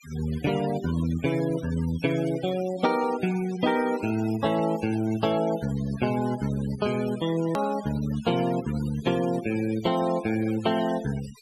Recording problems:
denoising artefacts; signal-to-artefact ratio 15 dB
click at an edit; at 7.5 s

